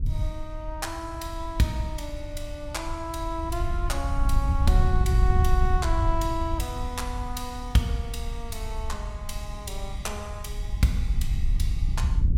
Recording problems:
wind noise; below 76 Hz, SNR -1 dB

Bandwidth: 16.5 kHz